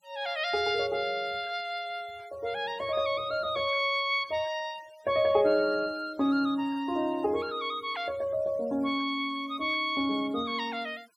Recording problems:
denoising artefacts; signal-to-artefact ratio 25 dB

